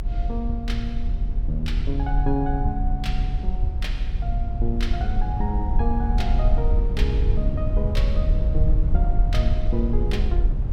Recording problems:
low-frequency rumble; below 60 Hz, SNR -5 dB

